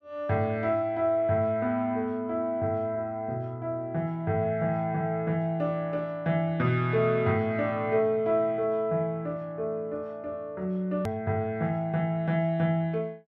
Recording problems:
click at an edit; at 11 s

